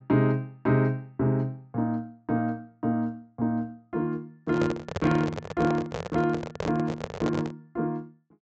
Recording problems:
low-pass filter; nothing above 8 kHz
microphone handling noise; from 4.5 to 7.5 s; peak +2 dB vs average level

